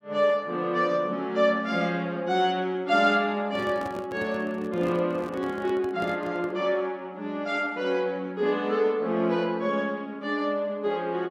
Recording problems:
microphone handling noise; from 3.5 to 6.5 s; peak -7 dB vs average level

